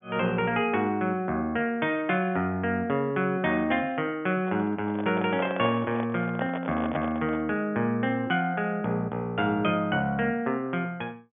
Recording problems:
treble cut off; nothing above 3.5 kHz
handling noise; from 4.5 to 7.5 s; peak -2 dB vs average level

